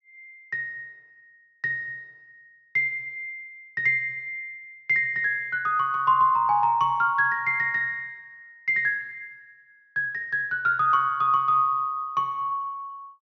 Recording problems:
low-pass filter; nothing above 6.4 kHz

